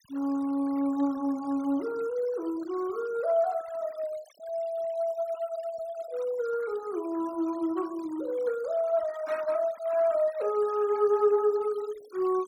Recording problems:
denoising artefacts; signal-to-artefact ratio 22 dB

